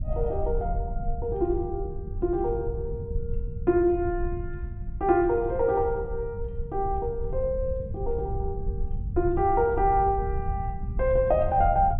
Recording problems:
treble missing; nothing above 4 kHz
rumble; below 86 Hz, SNR 7 dB

